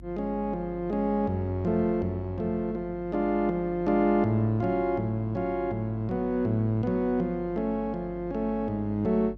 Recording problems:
electrical hum; 50 Hz, harmonics up to 350 Hz, SNR 18 dB

